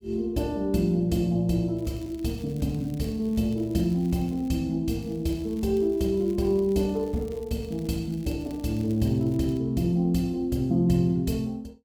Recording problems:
crackle; from 2 to 4.5 s and from 5 to 9.5 s; loose cable, SNR 28 dB

